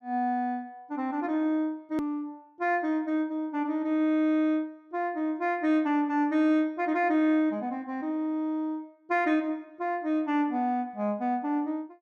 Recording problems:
edit click; at 2 s

